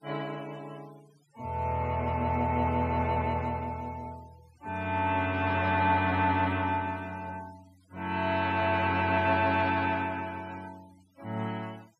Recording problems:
noise reduction artefacts; signal-to-artefact ratio 27 dB

